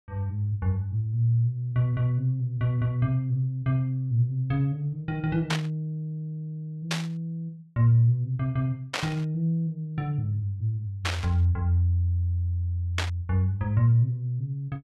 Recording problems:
burst of static; 5 times, first at 5.5 s; peak +3 dB vs average level

